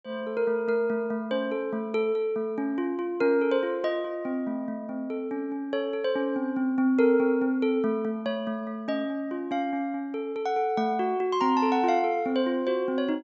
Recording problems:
treble cut off; nothing above 8 kHz

